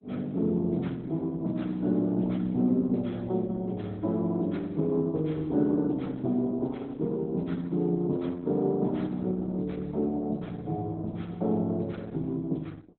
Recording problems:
codec artefacts; Opus, log-spectral distance 2 dB, nothing above 3.9 kHz

